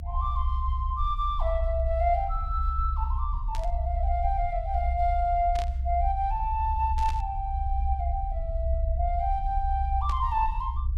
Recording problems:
rumble; below 66 Hz, SNR 1 dB
burst of static; 4 times, first at 3.5 s; peak -7 dB vs average level

